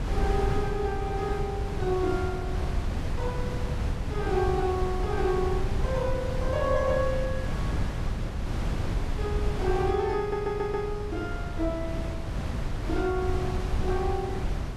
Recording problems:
wind noise; below 160 Hz, SNR 1 dB
audio stuttering; at 10 s

